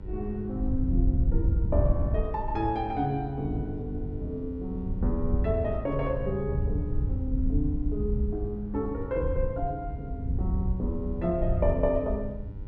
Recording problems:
hum; 50 Hz, harmonics up to 2 kHz, SNR 21 dB
wind on the microphone; below 88 Hz, SNR 0 dB

